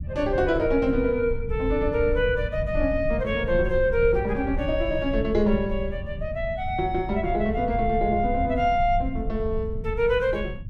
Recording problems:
low-frequency rumble; below 90 Hz, SNR 8 dB

